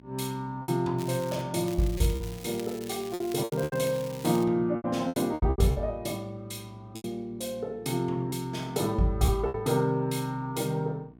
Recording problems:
hum; 60 Hz, harmonics up to 1.1 kHz, SNR 24 dB
packet loss; 8% of the sound replaced, filled with repeated pitch periods
crackle; at 1 s and from 1.5 to 4.5 s; loose cable, SNR 16 dB

